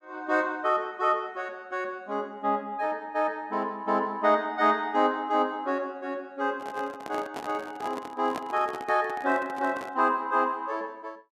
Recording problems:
microphone handling noise; from 6.5 to 10 s; peak -3 dB vs average level

